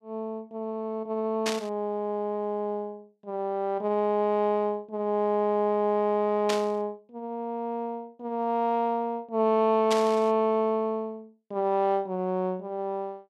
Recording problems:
static burst; at 1.5 s, at 6.5 s and at 10 s; peak +1 dB vs average level

